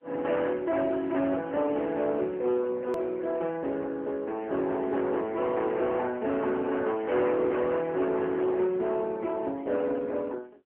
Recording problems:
telephone audio; 240 Hz to 3.4 kHz, AMR-NB
distortion; hard clipping, uneven, signal-to-distortion ratio 11 dB
click at an edit; at 3 s

